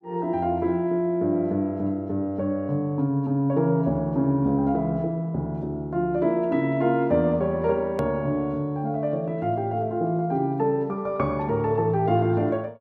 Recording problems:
edit click; at 8 s

